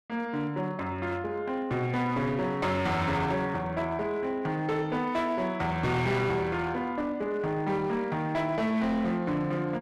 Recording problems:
distorted audio; hard clipping, uneven, signal-to-distortion ratio 11 dB

